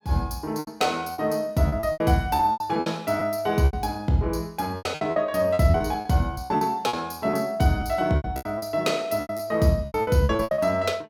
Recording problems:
packet loss; 16% of the sound replaced, filled with repeated pitch periods

